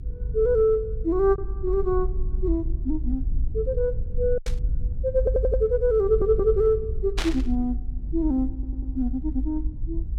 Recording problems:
low-frequency rumble; below 58 Hz, SNR 5 dB
lost packets; 1.4% of the sound replaced, filled with silence
burst of static; at 4.5 s and at 7 s; peak 0 dB vs average level
audio stuttering; at 5 s, at 6 s and at 8.5 s

